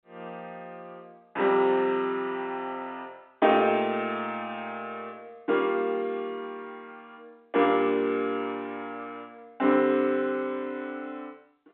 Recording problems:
phone line; 240 Hz to 3.7 kHz, G.711

